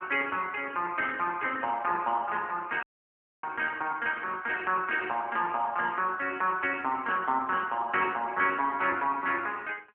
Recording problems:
telephone audio; 220 Hz to 3.3 kHz, AMR-NB
dropout; at 3 s for 0.5 s

